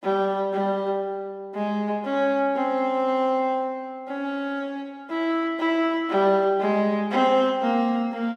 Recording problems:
none

